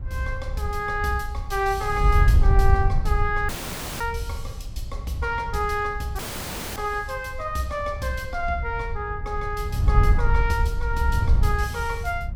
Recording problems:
wind on the microphone; below 82 Hz, SNR -1 dB
dropout; at 3.5 s for 0.5 s and at 6 s for 0.5 s

